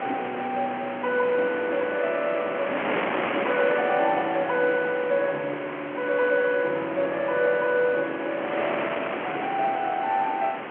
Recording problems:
telephone audio; 220 Hz to 3.4 kHz, G.711
wind noise; below 2.1 kHz, SNR 6 dB

